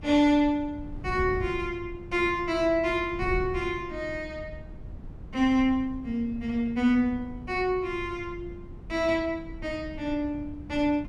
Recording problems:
wind on the microphone; below 140 Hz, SNR 14 dB

